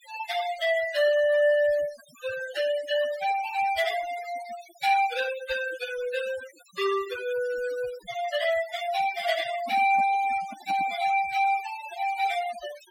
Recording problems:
denoising artefacts; signal-to-artefact ratio 13 dB
microphone handling noise; from 9.5 to 11 s; peak -11 dB vs average level

